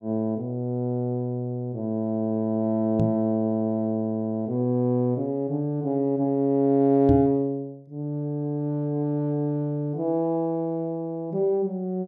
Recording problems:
microphone thump; at 3 s and at 7 s; peak +5 dB vs average level

